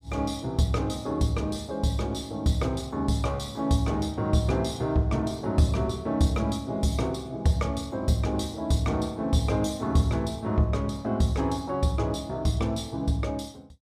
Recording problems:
none

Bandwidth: 14.5 kHz